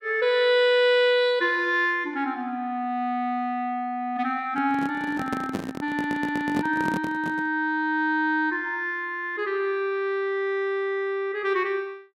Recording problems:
microphone handling noise; from 4.5 to 7.5 s; peak 0 dB vs average level
stutter; at 6 s

